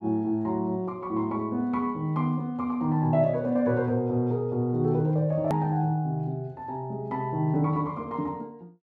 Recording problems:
click at an edit; at 5.5 s

